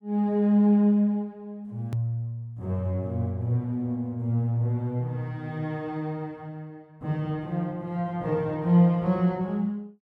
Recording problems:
edit click; at 2 s

